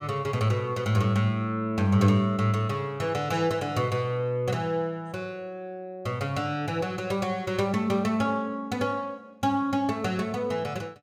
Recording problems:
none

